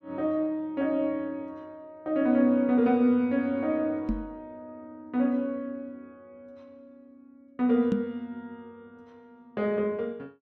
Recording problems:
knock on the microphone; at 4 s and at 8 s; peak +3 dB vs average level

